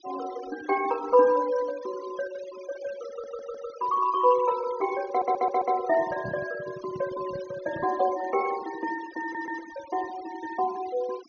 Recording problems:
treble cut off; nothing above 6.5 kHz
noise reduction artefacts; signal-to-artefact ratio 18 dB
stutter; at 3 s, at 5 s and at 9 s
microphone handling noise; from 6 to 8 s; peak -7 dB vs average level

